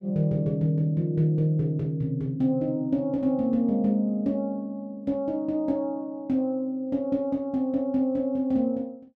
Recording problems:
none

